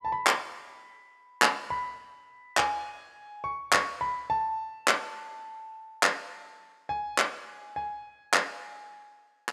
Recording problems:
none

